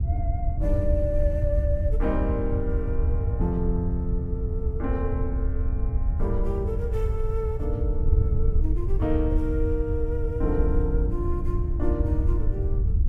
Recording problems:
wind on the microphone; below 82 Hz, SNR -4 dB

